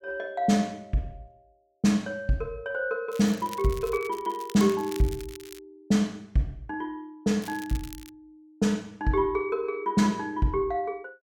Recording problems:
crackling; from 3 to 5.5 s and at 7.5 s; loose cable, SNR 18 dB

